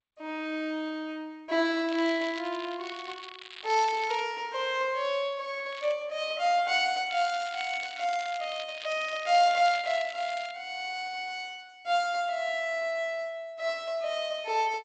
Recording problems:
lossy codec; G.722, log-spectral distance 6 dB, nothing above 7.8 kHz
crackling; from 2 to 4 s, at 5.5 s and from 7 to 11 s; loose cable, SNR 15 dB

